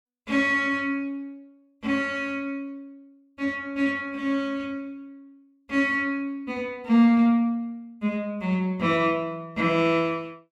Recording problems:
none

